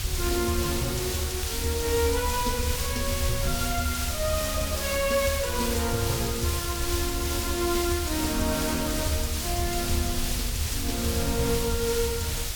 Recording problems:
background hiss; slope +1 dB per octave, SNR 1 dB
rumble; below 76 Hz, SNR 6 dB
crackling; vinyl, SNR 28 dB

